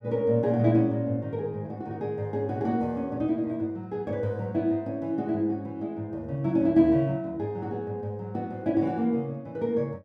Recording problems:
none

